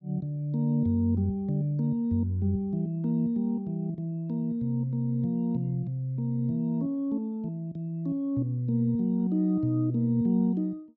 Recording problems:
none

